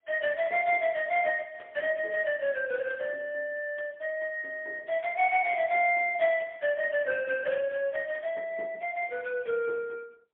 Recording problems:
phone line; 320 Hz to 3.4 kHz, AMR-NB, then MP3

